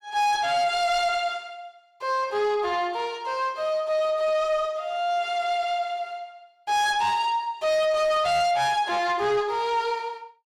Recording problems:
distorted audio; soft clipping, signal-to-distortion ratio 11 dB

